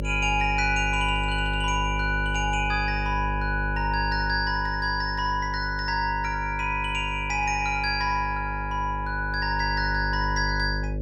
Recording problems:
electrical hum; 50 Hz, harmonics up to 600 Hz, SNR 6 dB

